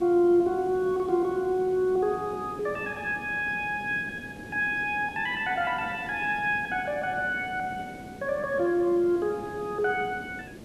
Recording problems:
background hiss; SNR 16 dB

